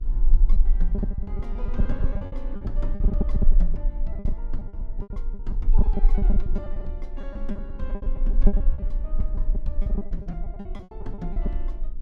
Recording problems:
hum; 60 Hz, harmonics up to 600 Hz, SNR 13 dB
low-frequency rumble; below 38 Hz, strongest tone 18 Hz, SNR -11 dB
packet loss; 18% of the sound replaced, filled with repeated pitch periods

